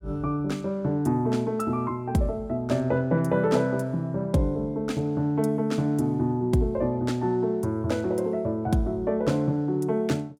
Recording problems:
none

